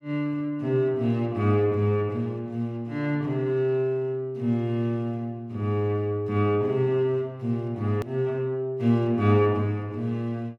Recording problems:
hard cut with a click; at 8 s

